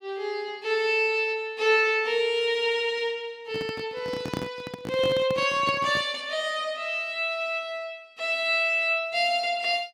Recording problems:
handling noise; from 3.5 to 6 s; peak -2 dB vs average level

